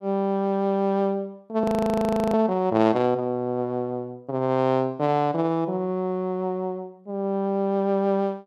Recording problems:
audio freezing; at 1.5 s for 0.5 s

